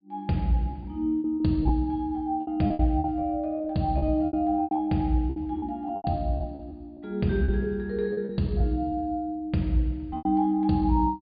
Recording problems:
low-pass filter; nothing above 4.8 kHz
lost packets; 11% of the sound replaced, filled with repeated pitch periods

